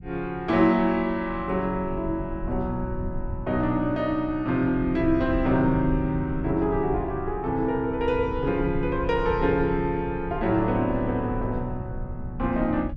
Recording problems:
low-frequency rumble; below 110 Hz, SNR 11 dB

